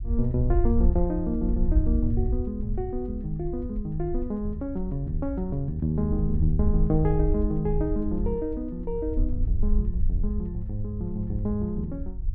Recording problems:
low-frequency rumble; below 66 Hz, SNR 2 dB

